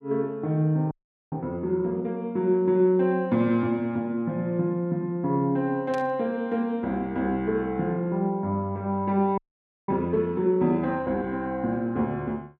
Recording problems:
frozen audio; at 1 s and at 9.5 s for 0.5 s
burst of static; at 6 s; peak -12 dB vs average level

